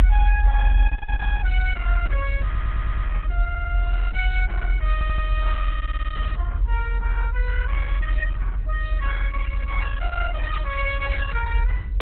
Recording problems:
codec artefacts; Opus, log-spectral distance 2 dB, nothing above 3.7 kHz
electrical hum; 50 Hz, harmonics up to 600 Hz, SNR 21 dB
low-frequency rumble; below 54 Hz, strongest tone 44 Hz, SNR -6 dB
audio stuttering; 4 times, first at 2.5 s

